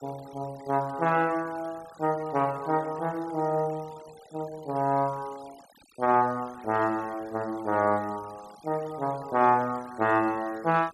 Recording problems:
noise reduction artefacts; signal-to-artefact ratio 23 dB

